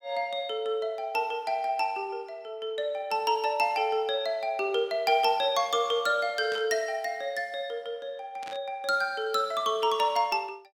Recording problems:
burst of static; at 6.5 s and at 8.5 s; peak -10 dB vs average level

